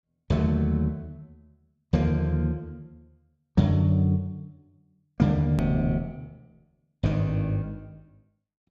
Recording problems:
hard cut with a click; at 5.5 s

